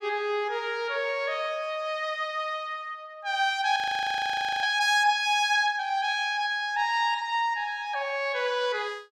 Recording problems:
frozen audio; at 4 s for 1 s

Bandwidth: 15 kHz